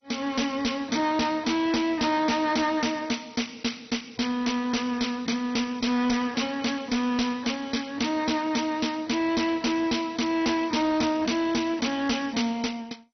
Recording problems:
lossy compression; MP2, log-spectral distance 7 dB, nothing above 6 kHz
distortion; hard clipping, signal-to-distortion ratio 6 dB

